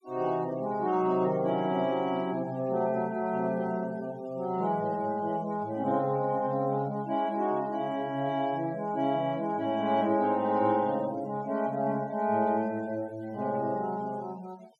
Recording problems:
denoising artefacts; signal-to-artefact ratio 25 dB

